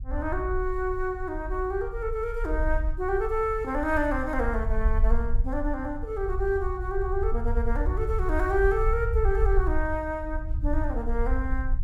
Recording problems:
rumble; below 58 Hz, SNR 2 dB

